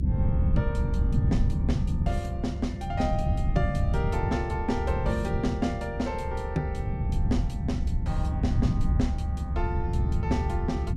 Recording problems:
rumble; below 140 Hz, SNR -4 dB

